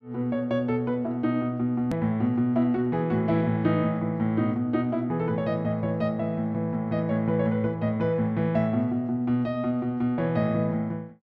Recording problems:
click at an edit; at 2 s

